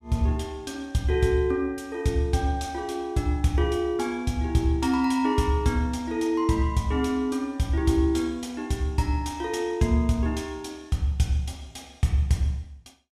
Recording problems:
none

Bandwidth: 15.5 kHz